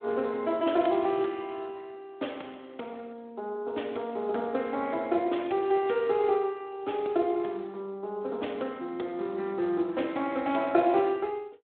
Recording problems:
phone line; 240 Hz to 3.5 kHz, Speex

